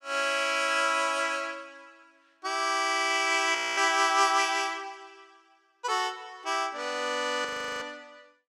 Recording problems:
frozen audio; at 3.5 s and at 7.5 s

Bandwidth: 14.5 kHz